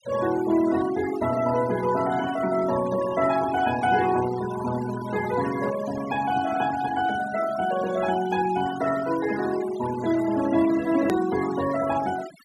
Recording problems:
noise reduction artefacts; signal-to-artefact ratio 14 dB
click at an edit; at 11 s

